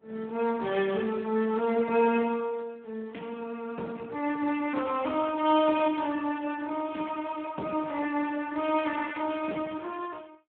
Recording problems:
telephone audio; 170 Hz to 3.4 kHz, Speex

